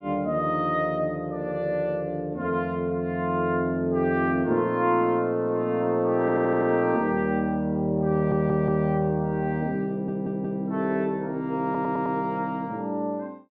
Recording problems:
audio stuttering; 4 times, first at 6 s

